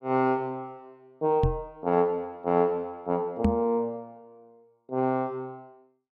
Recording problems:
microphone bump; at 1.5 s and at 3.5 s; peak +7 dB vs average level

